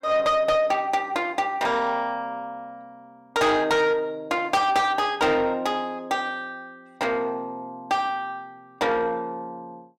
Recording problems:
distortion; soft clipping, signal-to-distortion ratio 10 dB

